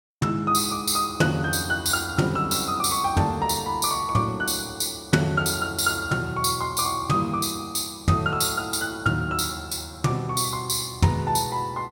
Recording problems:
none

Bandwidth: 17 kHz